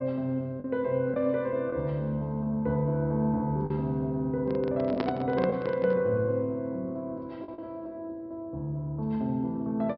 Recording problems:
low-pass filter; nothing above 5.4 kHz
lost packets; 2% of the sound replaced, filled with the last packet
handling noise; from 4.5 to 6 s; peak +3 dB vs average level

